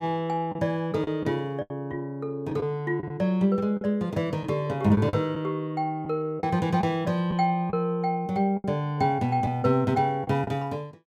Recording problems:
packet loss; 6% of the sound replaced, filled with the last packet

